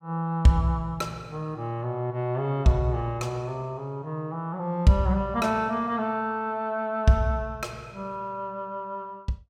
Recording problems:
none

